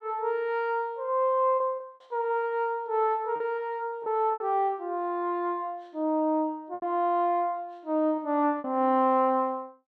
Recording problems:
lost packets; 4% of the sound replaced, filled with repeated pitch periods

